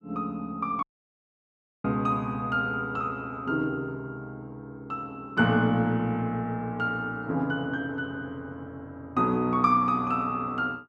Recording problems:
dropout; at 1 s for 1 s

